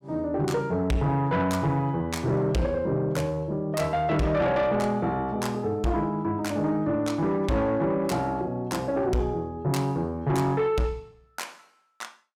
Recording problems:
distorted audio; soft clipping, signal-to-distortion ratio 11 dB

